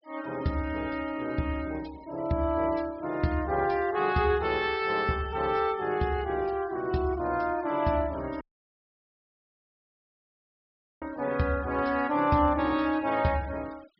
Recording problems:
low-pass filter; nothing above 5.5 kHz
noise reduction artefacts; signal-to-artefact ratio 23 dB
audio cutting out; at 8.5 s for 2.5 s

